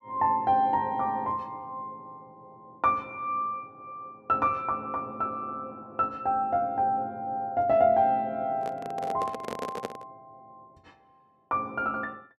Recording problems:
microphone handling noise; from 8.5 to 10 s; peak -2 dB vs average level

